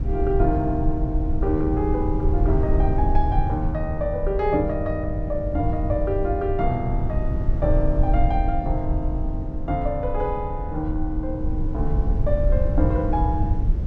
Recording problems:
rumble; below 78 Hz, SNR 0 dB

